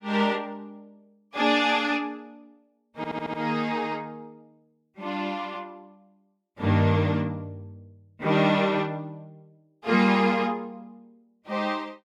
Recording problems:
stutter; at 3 s

